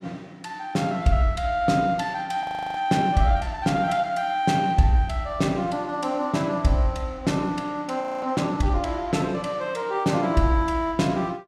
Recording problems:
frozen audio; at 2.5 s and at 8 s

